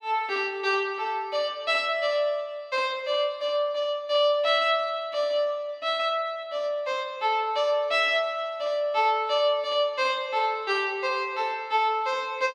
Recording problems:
none

